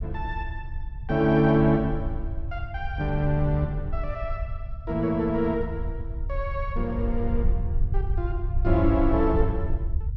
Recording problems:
rumble; below 72 Hz, SNR 6 dB

